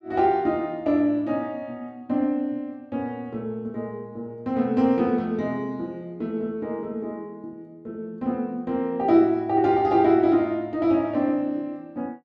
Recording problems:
none

